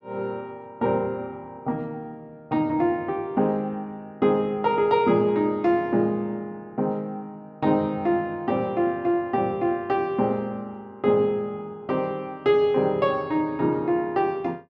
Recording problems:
none

